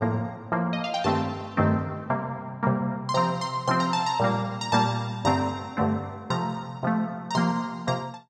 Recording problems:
none

